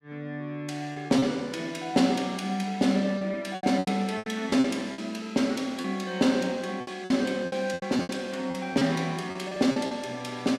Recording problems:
lost packets; 10% of the sound replaced, filled with repeated pitch periods

